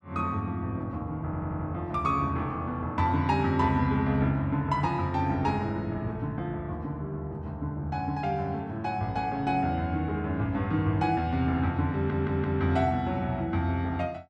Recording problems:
stutter; at 1.5 s and at 12 s

